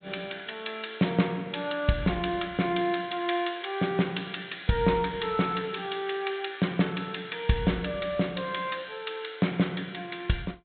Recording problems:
low-pass filter; nothing above 4 kHz

